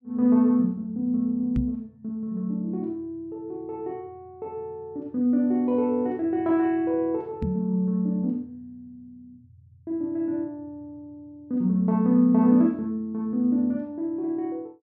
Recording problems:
microphone thump; at 1.5 s and at 7.5 s; peak +1 dB vs average level

